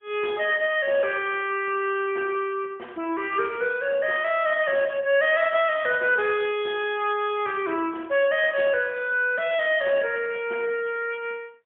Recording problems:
telephone audio; 260 Hz to 3.3 kHz, AMR-NB, then MP3

